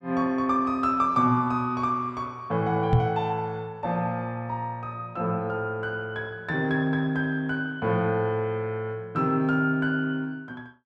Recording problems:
microphone thump; at 3 s; peak +7 dB vs average level

